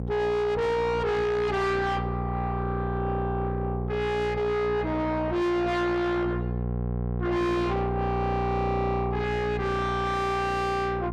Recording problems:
distortion; soft clipping, signal-to-distortion ratio 7 dB
hum; 60 Hz, harmonics up to 900 Hz, SNR 4 dB

